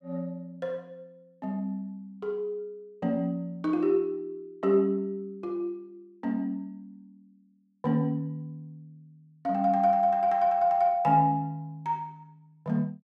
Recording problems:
none

